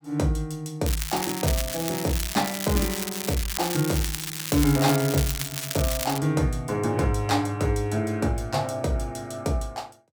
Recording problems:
crackling; from 1 to 6 s; loose cable, SNR 4 dB

